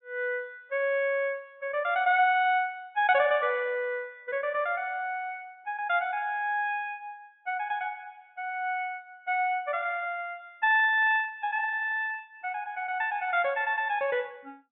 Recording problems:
treble cut off; nothing above 3.7 kHz

